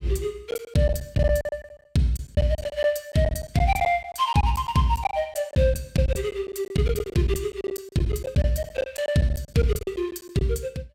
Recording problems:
packet loss; 13% of the sound replaced, filled with silence

